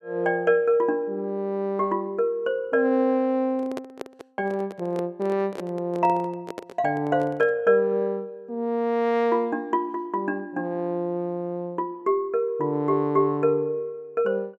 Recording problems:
microphone handling noise; from 3.5 to 7.5 s; peak -5 dB vs average level

